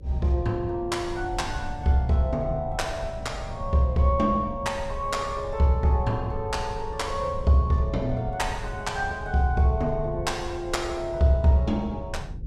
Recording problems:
hum; 50 Hz, harmonics up to 550 Hz, SNR 26 dB
low-frequency rumble; below 110 Hz, SNR 12 dB

